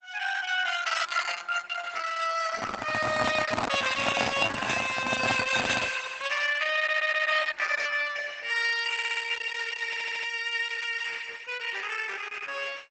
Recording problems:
lossy codec; Opus, log-spectral distance 7 dB, nothing above 8 kHz
microphone handling noise; from 2.5 to 6 s; peak +5 dB vs average level
stutter; at 7 s, at 9 s and at 10 s

